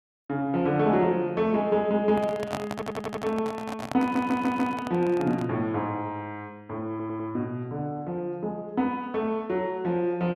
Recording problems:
microphone handling noise; from 2 to 5.5 s; peak +1 dB vs average level
stutter; at 2.5 s, at 4 s and at 7 s

